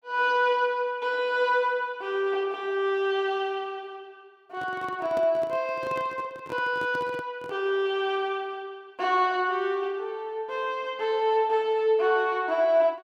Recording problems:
microphone handling noise; from 4.5 to 7.5 s; peak -8 dB vs average level

